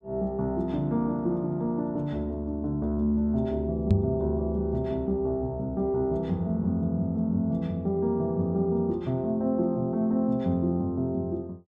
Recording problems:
microphone bump; at 4 s; peak +8 dB vs average level

